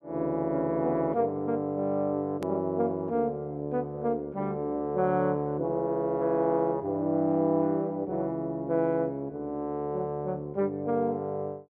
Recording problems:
edit click; at 2.5 s

